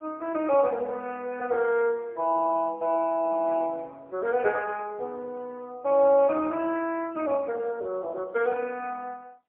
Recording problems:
phone line; 280 Hz to 3.3 kHz, AMR-NB, then MP3

